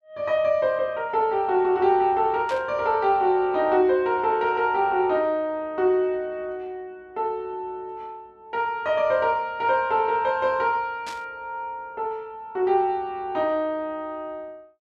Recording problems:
static burst; at 2.5 s and at 11 s; peak -10 dB vs average level

